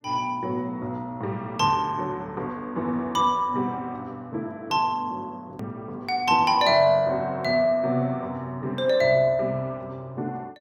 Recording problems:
click at an edit; at 5.5 s

